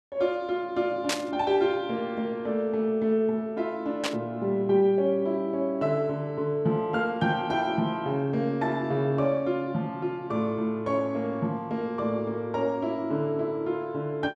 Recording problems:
static burst; at 1 s and at 4 s; peak +3 dB vs average level

